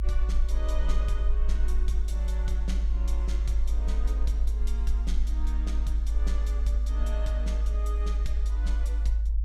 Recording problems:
rumble; below 54 Hz, strongest tone 52 Hz, SNR -11 dB

